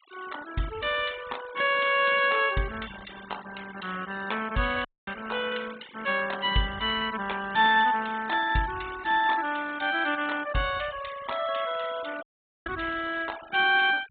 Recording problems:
treble missing; nothing above 4 kHz
noise reduction artefacts; signal-to-artefact ratio 17 dB
dropout; at 5 s and at 12 s

